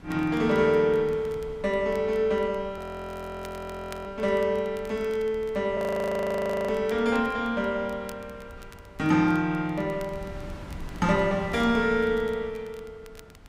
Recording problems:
wind noise; below 270 Hz, SNR 19 dB
crackling; vinyl, SNR 28 dB
frozen audio; at 3 s for 1.5 s and at 6 s for 1 s

